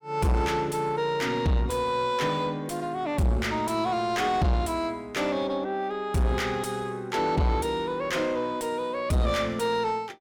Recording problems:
distortion; soft clipping, signal-to-distortion ratio 7 dB

